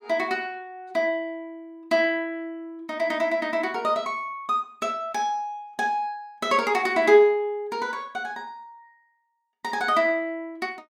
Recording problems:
none

